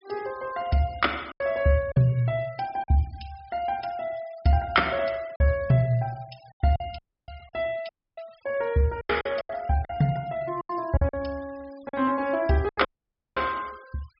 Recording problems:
treble missing; nothing above 5.5 kHz
noise reduction artefacts; signal-to-artefact ratio 25 dB
lost packets; 6% of the sound replaced, filled with silence
dropout; at 7 s, at 8 s and at 13 s for 0.5 s

